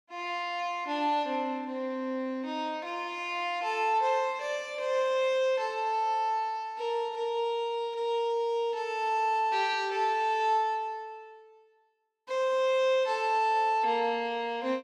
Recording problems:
none

